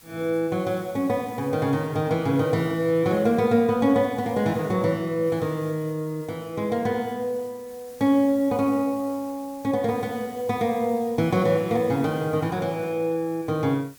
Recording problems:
hiss; slope -1 dB per octave, SNR 24 dB

